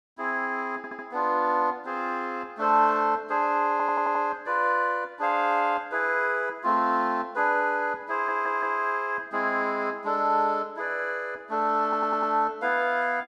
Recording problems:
stutter; 4 times, first at 1 s

